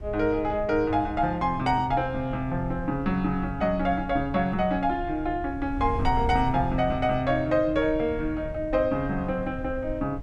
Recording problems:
wind noise; below 96 Hz, SNR 12 dB

